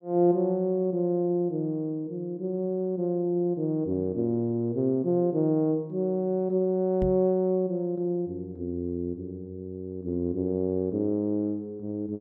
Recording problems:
knock on the microphone; at 7 s; peak 0 dB vs average level

